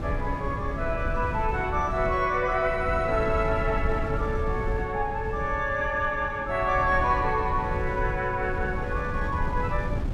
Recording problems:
wind on the microphone; below 140 Hz, SNR 6 dB

